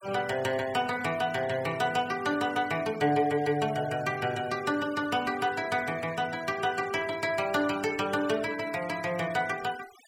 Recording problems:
denoising artefacts; signal-to-artefact ratio 18 dB

